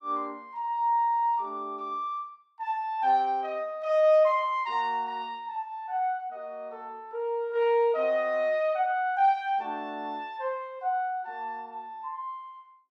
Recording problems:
none

